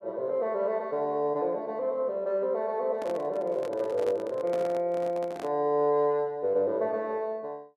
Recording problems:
microphone handling noise; from 3 to 5.5 s; peak -7 dB vs average level

